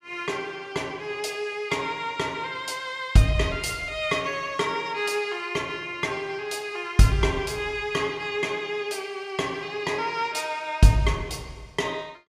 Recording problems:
none

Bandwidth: 15 kHz